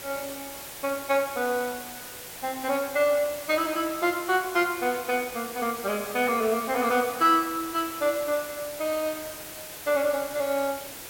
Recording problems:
hiss; slope -2 dB per octave, SNR 11 dB

